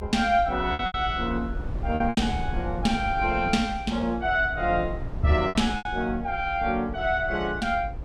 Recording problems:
low-frequency rumble; below 110 Hz, SNR 10 dB
lost packets; 6% of the sound replaced, filled with repeated pitch periods

